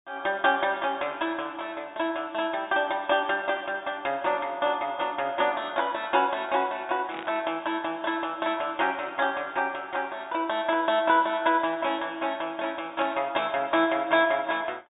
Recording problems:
low-pass filter; nothing above 4 kHz
static burst; at 7 s, at 11 s and at 13 s; peak -7 dB vs average level

